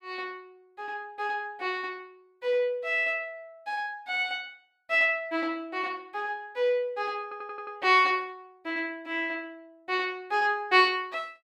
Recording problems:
audio stuttering; at 7 s

